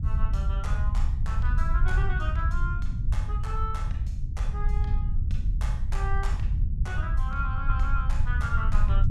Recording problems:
rumble; below 72 Hz, SNR -8 dB

